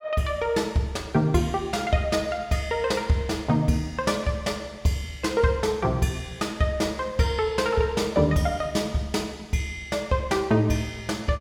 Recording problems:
none

